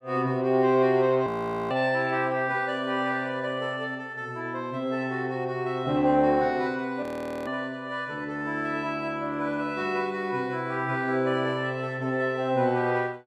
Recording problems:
frozen audio; at 1.5 s and at 7 s

